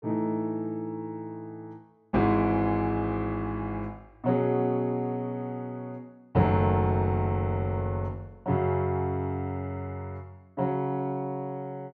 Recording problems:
none

